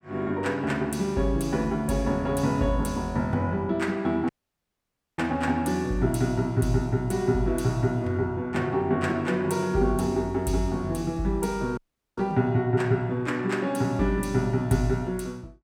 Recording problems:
audio cutting out; at 4.5 s for 1 s and at 12 s

